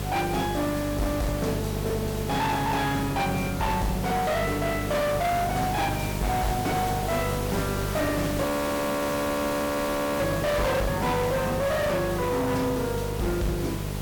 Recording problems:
distortion; hard clipping, signal-to-distortion ratio 7 dB
electrical hum; 50 Hz, harmonics up to 1.1 kHz, SNR 6 dB
hiss; slope -4 dB per octave, SNR 8 dB
frozen audio; at 8.5 s for 2 s

